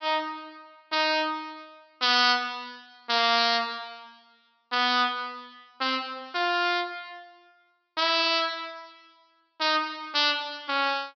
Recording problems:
treble cut off; nothing above 5.5 kHz

